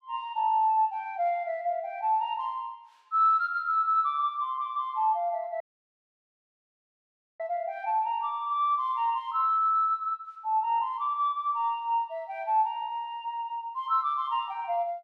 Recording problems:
dropout; at 5.5 s for 2 s

